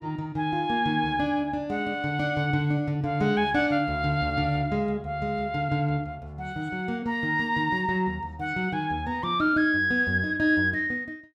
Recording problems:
none

